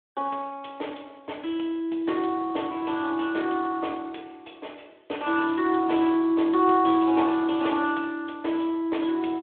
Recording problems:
phone line; 280 Hz to 3.5 kHz, Speex

